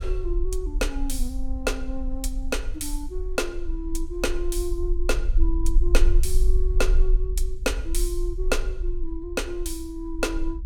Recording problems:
rumble; below 42 Hz, strongest tone 18 Hz, SNR -2 dB

